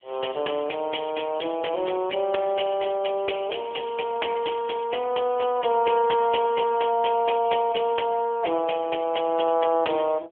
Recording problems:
telephone audio; 300 Hz to 3.4 kHz, AMR-NB

